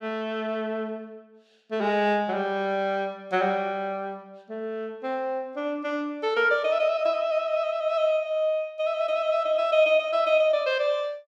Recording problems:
none

